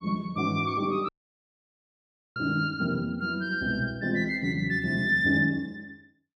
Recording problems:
audio cutting out; at 1 s for 1.5 s

